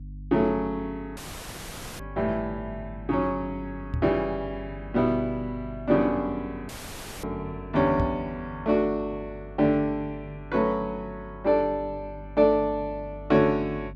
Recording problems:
mains hum; 50 Hz, harmonics up to 300 Hz, SNR 16 dB
dropout; at 1 s for 1 s and at 6.5 s for 0.5 s
microphone thump; at 4 s and at 8 s; peak +1 dB vs average level

